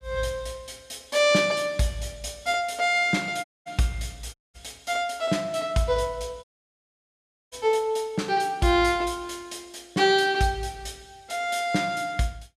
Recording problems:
dropout; at 3.5 s, at 4.5 s and at 6.5 s for 1 s

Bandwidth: 15 kHz